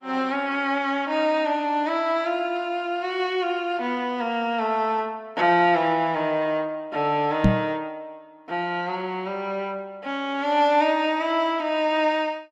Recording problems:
lossy compression; Opus, log-spectral distance 2 dB
knock on the microphone; at 7.5 s; peak +9 dB vs average level

